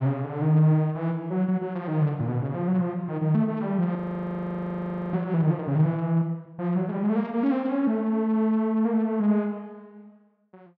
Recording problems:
audio freezing; at 4 s for 1 s

